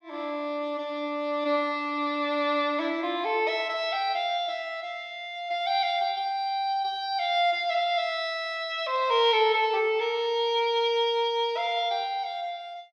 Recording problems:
none

